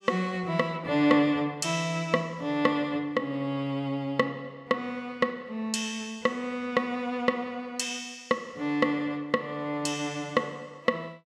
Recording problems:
none

